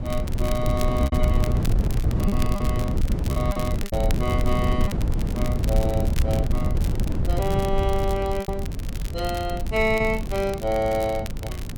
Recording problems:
wind on the microphone; below 130 Hz, SNR -1 dB
crackle; vinyl, SNR 13 dB
lost packets; 5% of the sound replaced, filled with repeated pitch periods

